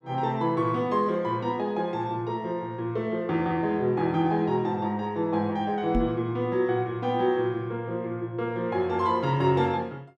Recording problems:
microphone thump; at 6 s; peak +3 dB vs average level

